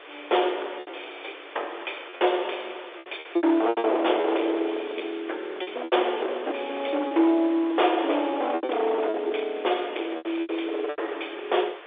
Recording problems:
telephone audio; 300 Hz to 3.6 kHz, G.711
distorted audio; hard clipping, signal-to-distortion ratio 12 dB
hiss; SNR 17 dB
lost packets; 10% of the sound replaced, filled with repeated pitch periods

